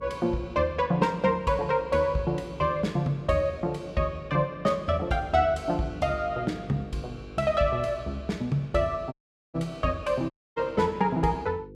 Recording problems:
hum; 50 Hz, harmonics up to 500 Hz, SNR 19 dB
audio cutting out; at 9 s and at 10 s

